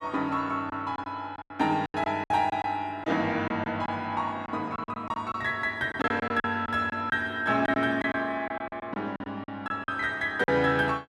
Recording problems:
packet loss; 11% of the sound replaced, filled with silence

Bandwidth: 14 kHz